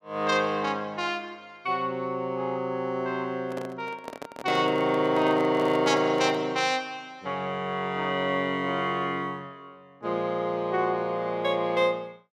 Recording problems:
handling noise; from 3.5 to 6.5 s; peak -4 dB vs average level

